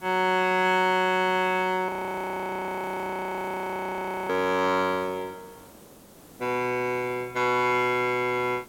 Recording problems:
hiss; SNR 23 dB
audio freezing; at 2 s for 2.5 s

